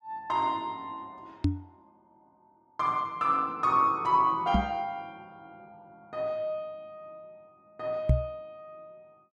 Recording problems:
knock on the microphone; at 1.5 s, at 4.5 s and at 8 s; peak +9 dB vs average level

